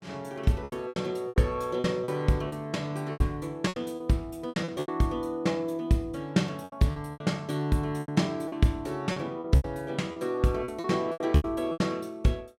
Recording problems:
packet loss; 13% of the sound replaced, filled with repeated pitch periods

